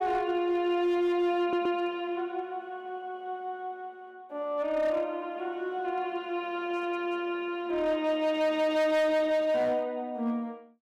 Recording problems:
distorted audio; hard clipping, uneven, signal-to-distortion ratio 11 dB
stutter; at 1.5 s

